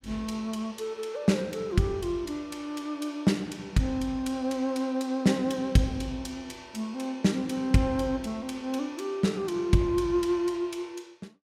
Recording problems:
none

